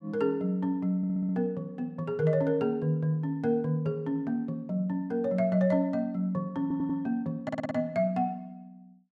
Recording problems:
stutter; at 1 s, at 6.5 s and at 7.5 s

